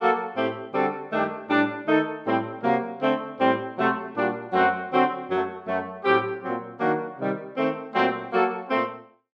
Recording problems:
none

